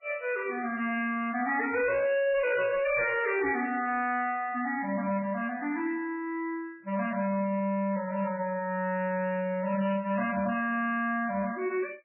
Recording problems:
lossy compression; MP3, log-spectral distance 3 dB, nothing above 2.4 kHz
distortion; hard clipping, signal-to-distortion ratio 10 dB

